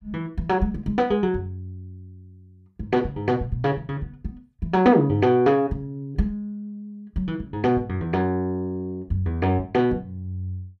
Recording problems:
none

